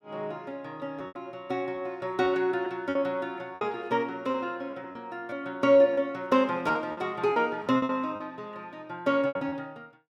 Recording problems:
lost packets; 8% of the sound replaced, filled with repeated pitch periods

